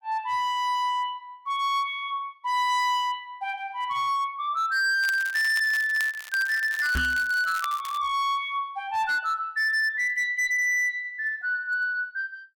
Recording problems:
distorted audio; hard clipping, signal-to-distortion ratio 10 dB
crackle; from 5 to 8 s; loose cable, SNR 15 dB
knock on the microphone; at 7 s; peak +1 dB vs average level

